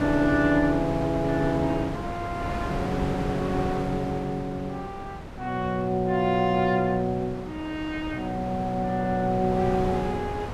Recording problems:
wind noise; below 730 Hz, SNR 8 dB

